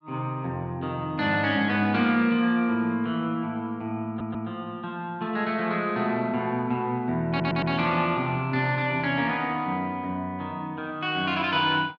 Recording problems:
audio stuttering; at 4 s and at 7.5 s

